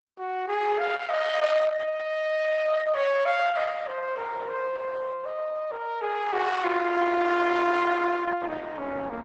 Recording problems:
codec artefacts; Opus, log-spectral distance 4 dB, nothing above 8 kHz

